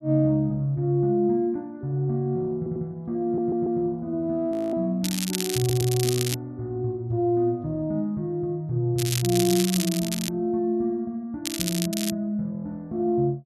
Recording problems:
audio stuttering; at 2.5 s, at 3 s and at 5.5 s
audio freezing; at 4.5 s
crackle; from 5 to 6.5 s, from 9 to 10 s and at 11 s; loose cable, SNR 4 dB

